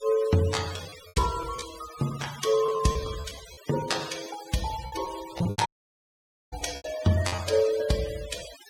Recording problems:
noise reduction artefacts; signal-to-artefact ratio 12 dB
lost packets; 10% of the sound replaced, filled with repeated pitch periods
dropout; at 5.5 s for 1 s

